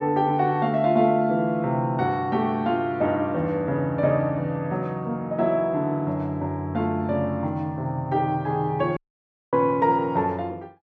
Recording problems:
audio cutting out; at 9 s for 0.5 s

